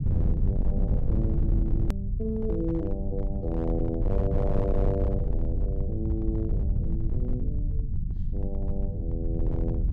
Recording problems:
distortion; hard clipping, signal-to-distortion ratio 12 dB
rumble; below 98 Hz, SNR -4 dB
click at an edit; at 2 s

